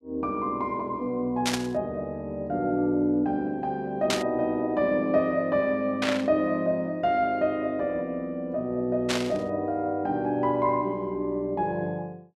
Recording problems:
static burst; 4 times, first at 1.5 s; peak +4 dB vs average level

